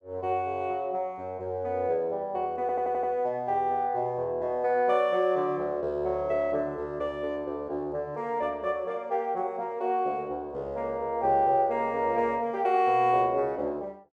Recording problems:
audio stuttering; at 2.5 s

